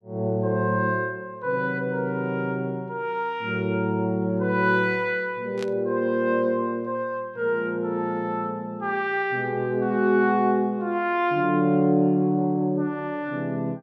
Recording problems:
burst of static; at 5.5 s; peak -9 dB vs average level

